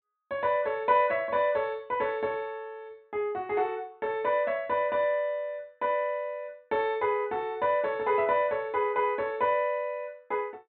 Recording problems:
treble missing; nothing above 4 kHz

